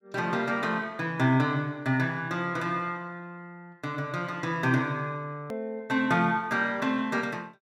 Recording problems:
hard cut with a click; at 5.5 s

